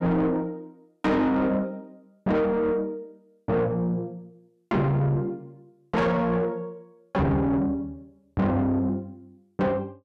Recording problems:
distorted audio; soft clipping, signal-to-distortion ratio 7 dB

